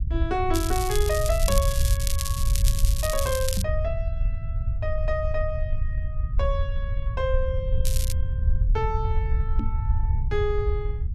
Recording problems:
rumble; below 76 Hz, SNR -3 dB
crackling; from 0.5 to 3.5 s and at 8 s; loose cable, SNR 3 dB
knock on the microphone; at 1.5 s, at 3.5 s and at 9.5 s; peak +3 dB vs average level

